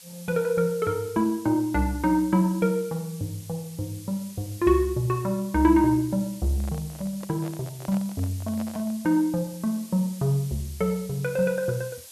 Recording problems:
hiss; SNR 18 dB
microphone handling noise; from 6.5 to 9 s; peak -10 dB vs average level

